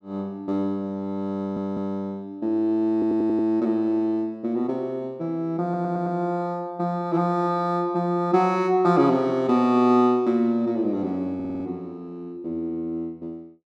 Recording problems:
stutter; 4 times, first at 1.5 s

